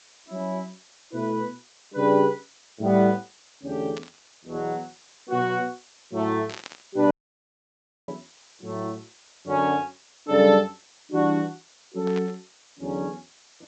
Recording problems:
treble cut off; nothing above 8 kHz
background hiss; slope +1 dB per octave, SNR 27 dB
static burst; at 4 s, at 6.5 s and at 12 s; peak -8 dB vs average level
audio cutting out; at 7 s for 1 s

